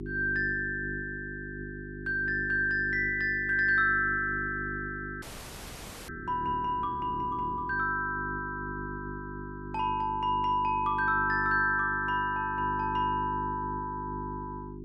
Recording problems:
hum; 50 Hz, harmonics up to 400 Hz, SNR 11 dB
frozen audio; at 5 s for 1 s

